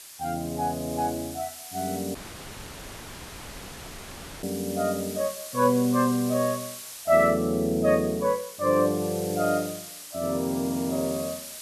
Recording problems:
background hiss; slope +2 dB per octave, SNR 12 dB
dropout; at 2 s for 2.5 s

